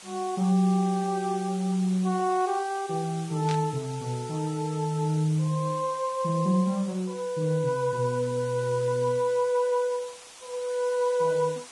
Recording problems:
lossy compression; Vorbis, log-spectral distance 4 dB
hiss; slope 0 dB per octave, SNR 18 dB
burst of static; at 3.5 s; peak -6 dB vs average level

